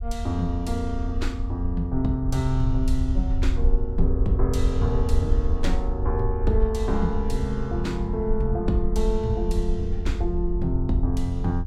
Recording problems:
rumble; below 62 Hz, SNR 1 dB

